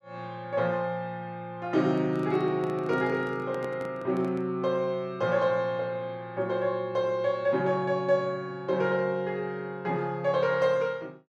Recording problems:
microphone handling noise; from 2 to 4.5 s; peak -7 dB vs average level

